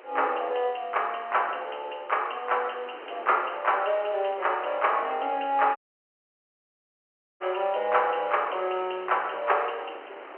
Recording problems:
phone line; 320 Hz to 3.1 kHz, G.711
hiss; SNR 26 dB
wind noise; below 1.4 kHz, SNR 18 dB
audio cutting out; at 6 s for 1.5 s

